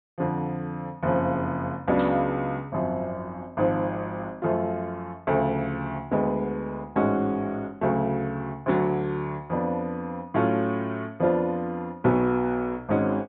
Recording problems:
treble cut off; nothing above 4 kHz
burst of static; at 2 s; peak -11 dB vs average level

